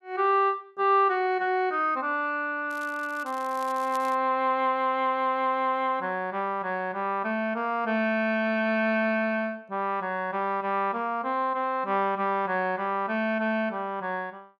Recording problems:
crackling; from 2.5 to 4 s; loose cable, SNR 22 dB

